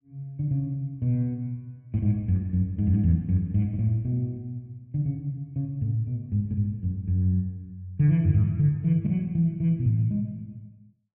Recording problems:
none

